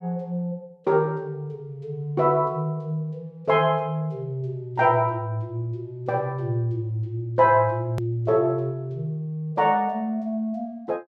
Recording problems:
hard cut with a click; at 8 s

